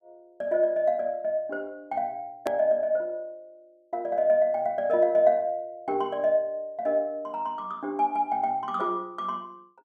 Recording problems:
edit click; at 2.5 s

